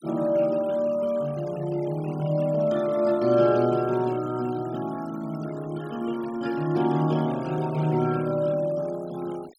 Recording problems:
denoising artefacts; signal-to-artefact ratio 22 dB

